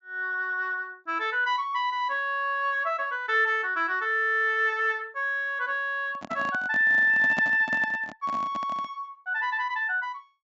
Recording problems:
treble cut off; nothing above 8 kHz
microphone handling noise; from 6 to 9 s; peak -3 dB vs average level

